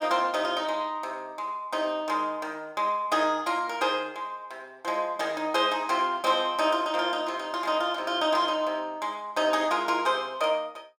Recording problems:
none

